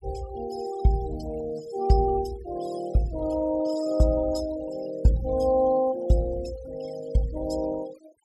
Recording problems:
noise reduction artefacts; signal-to-artefact ratio 18 dB

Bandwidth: 14.5 kHz